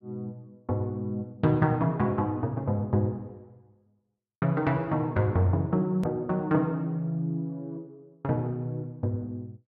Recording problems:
click at an edit; at 6 s

